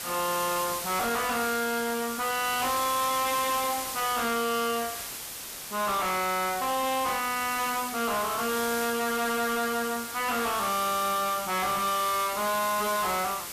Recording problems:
distortion; soft clipping, signal-to-distortion ratio 7 dB
background hiss; slope 0 dB per octave, SNR 6 dB

